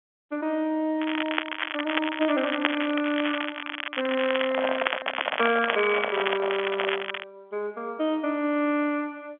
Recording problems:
phone line; 260 Hz to 3.5 kHz, G.711
crackle; from 1 to 7.5 s; loose cable, SNR 3 dB
handling noise; from 4.5 to 7 s; peak +2 dB vs average level

